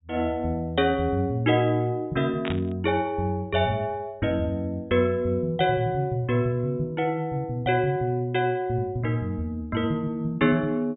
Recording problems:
treble missing; nothing above 4 kHz
burst of static; at 2.5 s; peak -4 dB vs average level

